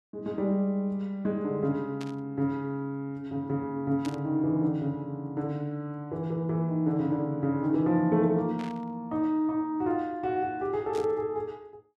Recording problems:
static burst; 4 times, first at 2 s; peak -9 dB vs average level

